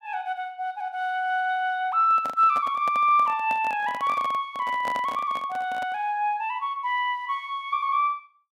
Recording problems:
microphone handling noise; from 2 to 6 s; peak -6 dB vs average level

